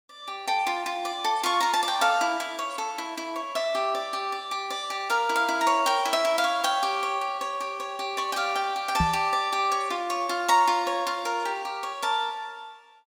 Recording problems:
microphone thump; at 9 s; peak +3 dB vs average level

